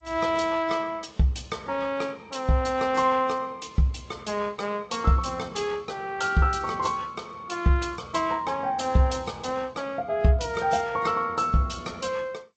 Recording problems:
lossy codec; AAC, then G.722, log-spectral distance 4 dB, nothing above 7.8 kHz

